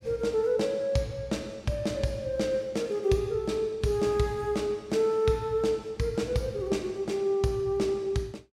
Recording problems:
none

